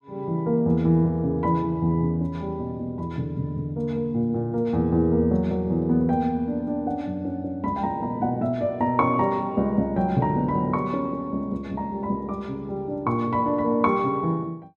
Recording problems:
none

